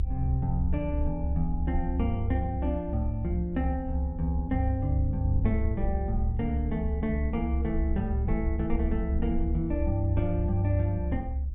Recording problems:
treble cut off; nothing above 3.8 kHz
low-frequency rumble; below 70 Hz, strongest tone 68 Hz, SNR 1 dB

